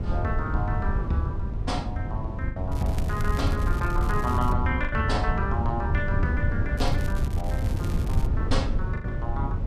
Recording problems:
low-frequency rumble; below 110 Hz, SNR -3 dB
packet loss; 3% of the sound replaced, filled with the last packet
crackling; from 2.5 to 4.5 s and from 7 to 8.5 s; loose cable, SNR 14 dB

